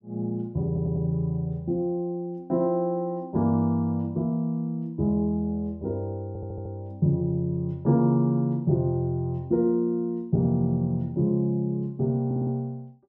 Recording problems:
stutter; at 0.5 s, at 6.5 s and at 12 s

